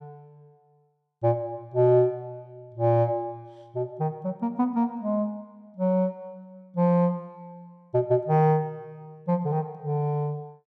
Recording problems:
none

